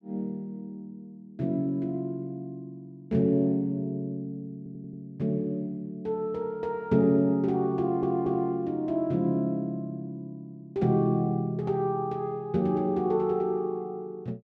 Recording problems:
audio stuttering; at 4.5 s and at 8 s

